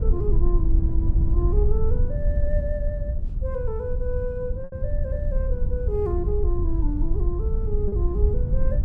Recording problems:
wind on the microphone; below 66 Hz, SNR -6 dB
packet loss; 1.4% of the sound replaced, filled with repeated pitch periods

